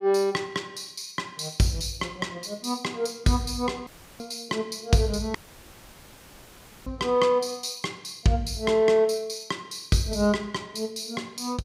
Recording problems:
dropout; at 4 s and at 5.5 s for 1.5 s

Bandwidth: 15.5 kHz